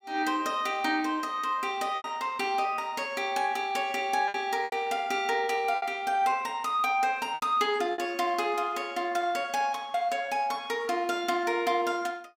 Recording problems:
lost packets; 4% of the sound replaced, filled with repeated pitch periods

